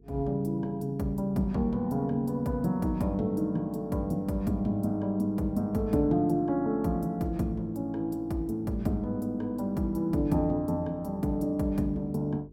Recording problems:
hum; 50 Hz, harmonics up to 450 Hz, SNR 25 dB

